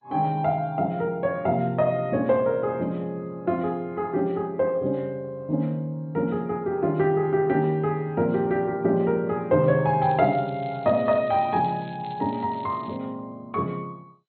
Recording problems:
lossy compression; MP2, log-spectral distance 2 dB, nothing above 4.2 kHz
crackling; from 10 to 13 s; loose cable, SNR 27 dB

